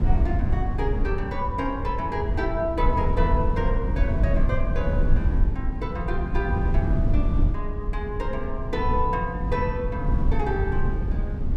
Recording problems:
low-frequency rumble; below 90 Hz, SNR -3 dB

